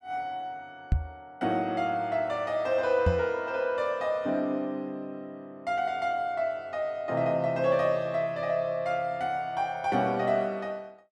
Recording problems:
microphone thump; at 1 s and at 3 s; peak +7 dB vs average level

